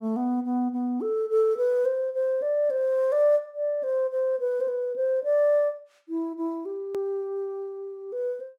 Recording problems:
click at an edit; at 7 s

